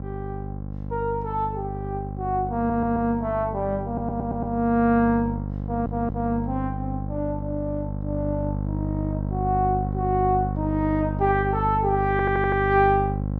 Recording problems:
mains hum; 50 Hz, harmonics up to 800 Hz, SNR 5 dB
audio stuttering; 4 times, first at 2.5 s

